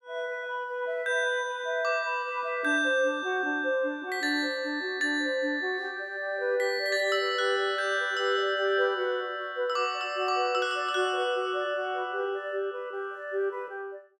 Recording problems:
none

